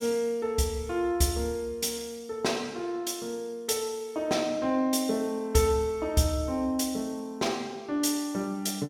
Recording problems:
none

